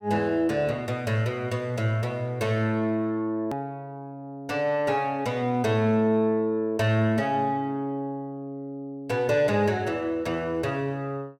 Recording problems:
click at an edit; at 3.5 s

